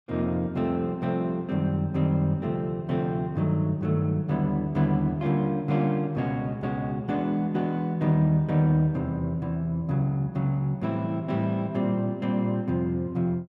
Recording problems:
none

